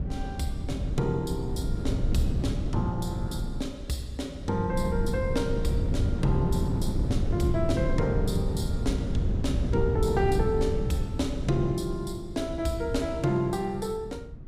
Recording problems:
wind noise; below 160 Hz, SNR 0 dB

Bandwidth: 15.5 kHz